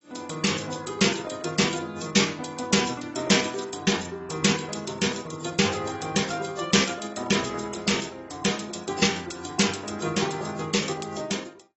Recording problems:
lossy codec; AAC, then AAC, log-spectral distance 8 dB, nothing above 7.8 kHz

